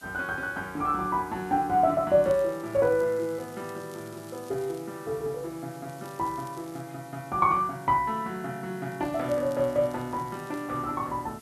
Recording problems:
hiss; slope 0 dB per octave, SNR 24 dB
crackling; from 2 to 5 s, at 6 s and from 9 to 11 s; loose cable, SNR 26 dB

